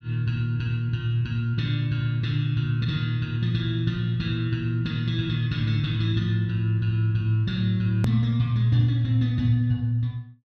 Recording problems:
edit click; at 8 s

